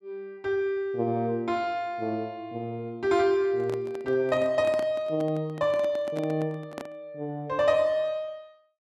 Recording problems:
microphone handling noise; from 3.5 to 7 s; peak -5 dB vs average level

